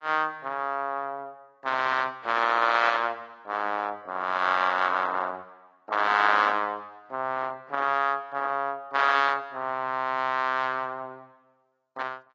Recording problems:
lossy codec; AAC, log-spectral distance 2 dB

